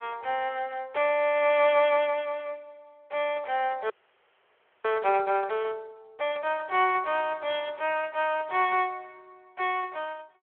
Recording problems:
phone line; 320 Hz to 3.4 kHz, Speex
frozen audio; at 4 s for 1 s

